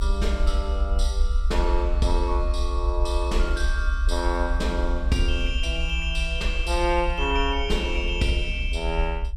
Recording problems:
low-frequency rumble; below 62 Hz, strongest tone 34 Hz, SNR 0 dB

